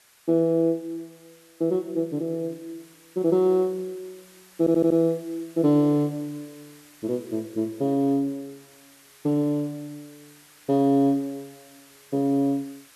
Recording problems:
hiss; SNR 27 dB
stutter; at 4.5 s

